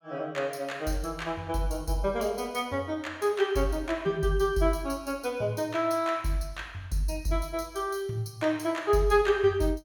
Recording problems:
none

